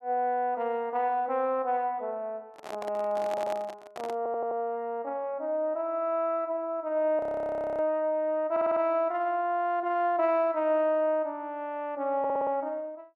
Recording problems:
microphone handling noise; from 2.5 to 4 s; peak -6 dB vs average level
stutter; 4 times, first at 3.5 s
audio freezing; at 7 s for 0.5 s

